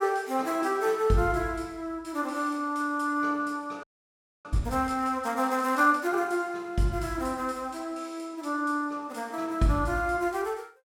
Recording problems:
frozen audio; at 4 s for 0.5 s

